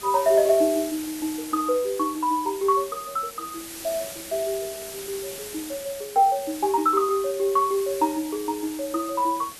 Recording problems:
hiss; SNR 12 dB

